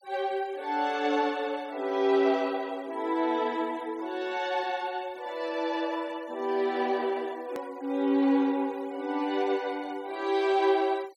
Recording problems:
noise reduction artefacts; signal-to-artefact ratio 25 dB
hard cut with a click; at 7.5 s

